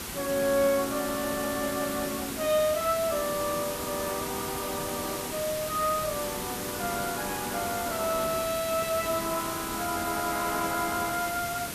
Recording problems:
hiss; slope -3 dB per octave, SNR 4 dB

